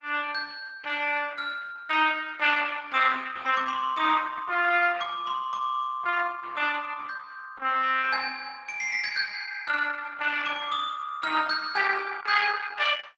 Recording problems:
lossy compression; Opus, log-spectral distance 4 dB, nothing above 7.6 kHz

